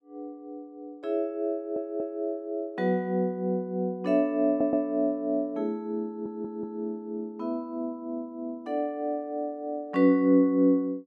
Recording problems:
audio stuttering; at 1.5 s, at 4.5 s and at 6 s

